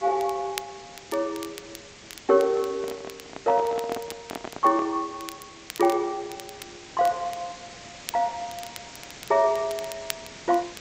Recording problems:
lossy compression; G.722, log-spectral distance 11 dB
hiss; slope -1 dB per octave, SNR 17 dB
crackling; vinyl, SNR 16 dB
handling noise; from 2.5 to 5 s; peak -5 dB vs average level

